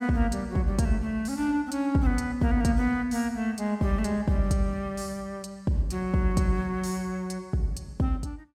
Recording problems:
none

